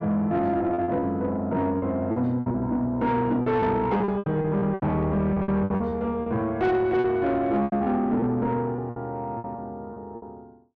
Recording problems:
distortion; soft clipping, signal-to-distortion ratio 12 dB
lost packets; 12% of the sound replaced, filled with repeated pitch periods

